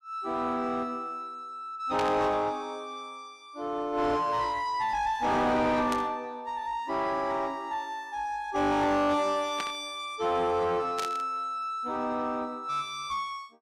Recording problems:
distorted audio; soft clipping, signal-to-distortion ratio 6 dB
static burst; 4 times, first at 2 s; peak -1 dB vs average level

